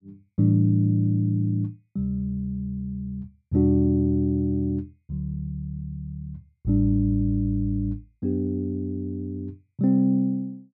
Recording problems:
none

